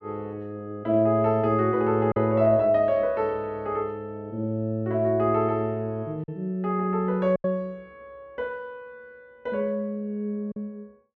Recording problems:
lost packets; 1.9% of the sound replaced, filled with silence

